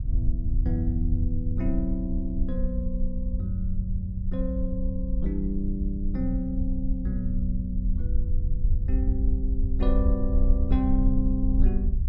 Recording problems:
rumble; below 60 Hz, SNR -2 dB

